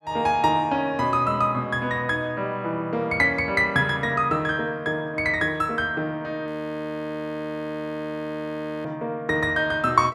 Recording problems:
audio freezing; at 6.5 s for 2.5 s

